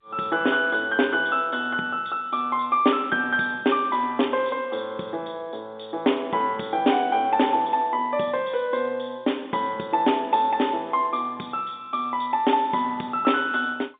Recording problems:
telephone audio; 220 Hz to 3.7 kHz, G.711

